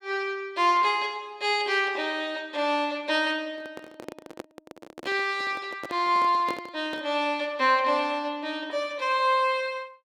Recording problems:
handling noise; from 3.5 to 7 s; peak -5 dB vs average level

